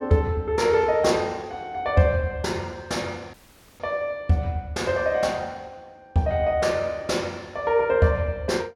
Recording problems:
dropout; at 3.5 s

